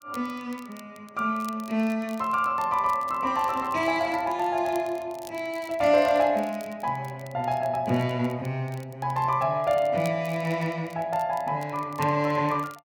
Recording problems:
crackling; vinyl, SNR 24 dB

